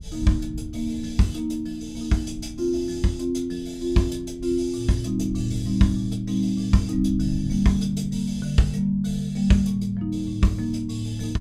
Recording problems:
wind noise; below 130 Hz, SNR 14 dB

